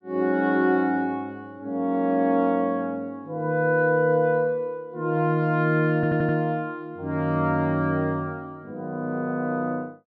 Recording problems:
stutter; at 6 s

